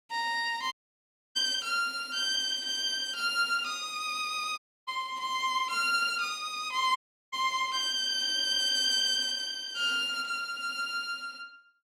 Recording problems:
audio cutting out; at 0.5 s for 0.5 s, at 4.5 s and at 7 s

